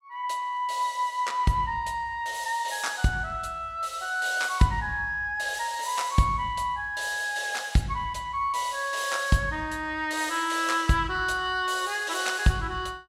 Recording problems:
none

